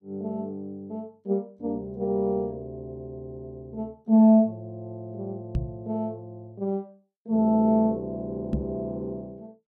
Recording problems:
knock on the microphone; at 5.5 s and at 8.5 s; peak +2 dB vs average level

